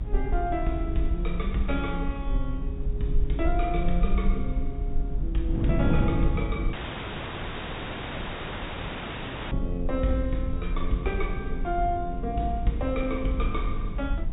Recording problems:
low-pass filter; nothing above 4 kHz
hiss; SNR 28 dB
rumble; below 46 Hz, SNR 2 dB
wind noise; below 230 Hz, SNR 5 dB
audio cutting out; at 6.5 s for 3 s

